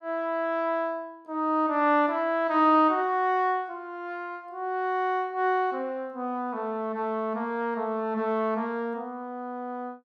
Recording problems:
none

